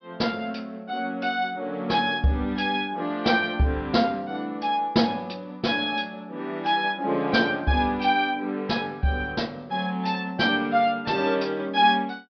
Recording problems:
treble missing; nothing above 5.5 kHz

